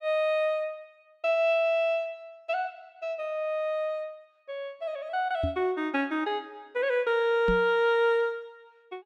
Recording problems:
microphone thump; at 5.5 s and at 7.5 s; peak 0 dB vs average level

